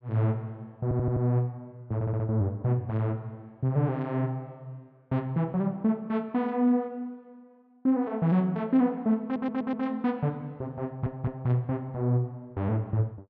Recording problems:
audio stuttering; 4 times, first at 1 s

